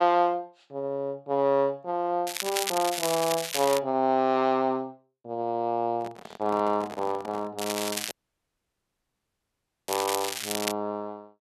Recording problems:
crackle; from 2.5 to 4 s and from 7.5 to 11 s; loose cable, SNR 4 dB
microphone handling noise; from 6 to 7.5 s; peak -7 dB vs average level
dropout; at 8 s for 2 s

